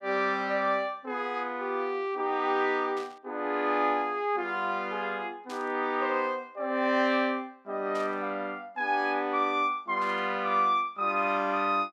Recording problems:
static burst; 4 times, first at 3 s; peak -12 dB vs average level

